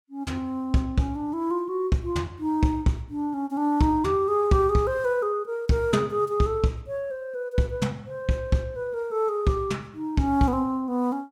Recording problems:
none

